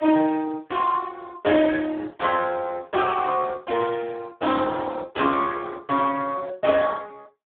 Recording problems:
telephone audio; 280 Hz to 2.2 kHz, Speex

